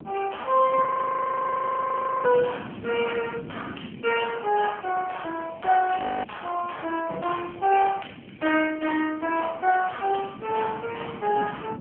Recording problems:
phone line; 220 Hz to 3.2 kHz, AMR-NB
wind noise; below 370 Hz, SNR 16 dB
audio freezing; at 1 s for 1.5 s and at 6 s

